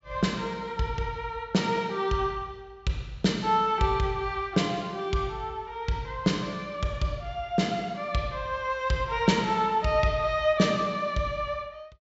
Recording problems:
low-pass filter; nothing above 7.6 kHz

